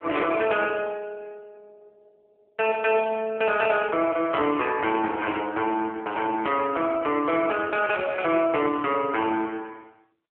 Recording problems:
phone line; 280 Hz to 3.4 kHz, AMR-NB

